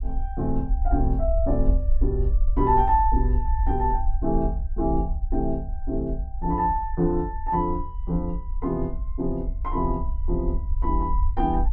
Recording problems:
low-frequency rumble; below 56 Hz, SNR 2 dB

